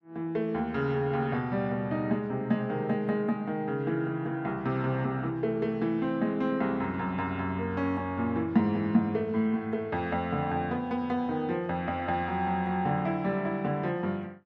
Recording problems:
none

